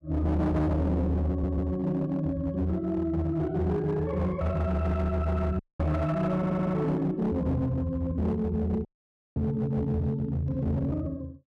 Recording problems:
distortion; hard clipping, uneven, signal-to-distortion ratio 10 dB
audio stuttering; at 1.5 s and at 6.5 s
audio cutting out; at 5.5 s and at 9 s for 0.5 s

